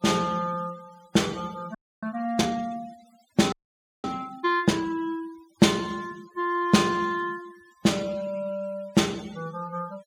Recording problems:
denoising artefacts; signal-to-artefact ratio 22 dB
frozen audio; at 2 s and at 3.5 s for 0.5 s

